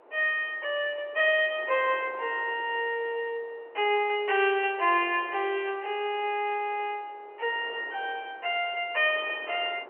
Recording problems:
telephone audio; 300 Hz to 3.2 kHz, G.711
wind on the microphone; below 960 Hz, SNR 21 dB

